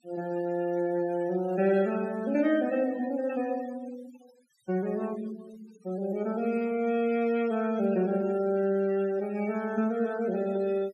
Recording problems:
denoising artefacts; signal-to-artefact ratio 21 dB

